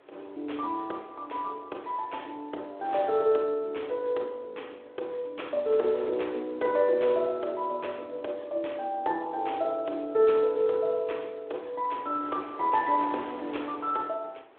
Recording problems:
phone line; 300 Hz to 3.6 kHz, Speex
wind noise; below 1.5 kHz, SNR 21 dB

